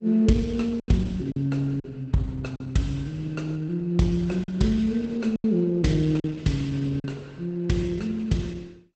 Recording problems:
lossy compression; Opus, log-spectral distance 2 dB, nothing above 8 kHz
packet loss; 5% of the sound replaced, filled with silence

